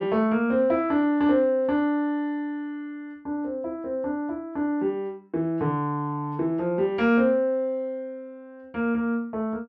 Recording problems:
none

